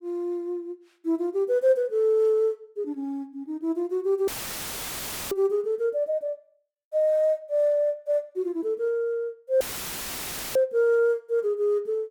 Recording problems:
audio cutting out; at 4.5 s for 1 s and at 9.5 s for 1 s; filled with static

